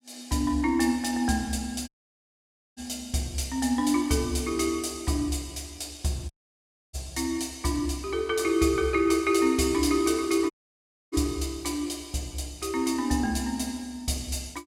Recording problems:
audio cutting out; at 2 s for 1 s, at 6.5 s for 0.5 s and at 11 s for 0.5 s

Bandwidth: 16.5 kHz